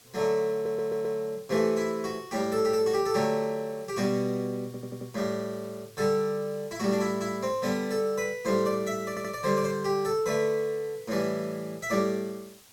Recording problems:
background hiss; slope 0 dB per octave, SNR 24 dB
audio stuttering; at 0.5 s, at 4.5 s and at 9 s

